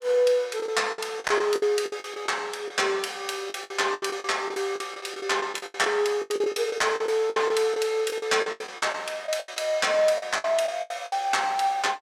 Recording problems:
lost packets; 17% of the sound replaced, filled with the last packet

